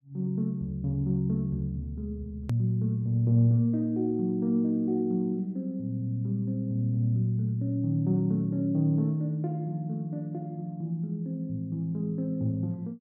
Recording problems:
click at an edit; at 2.5 s

